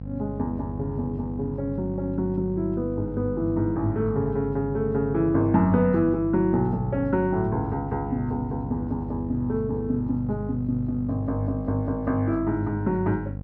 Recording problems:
electrical hum; 50 Hz, harmonics up to 750 Hz, SNR 8 dB

